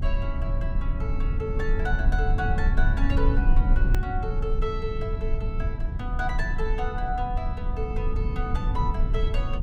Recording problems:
electrical hum; 60 Hz, harmonics up to 360 Hz, SNR 16 dB
low-frequency rumble; below 64 Hz, SNR -5 dB
edit click; at 4 s

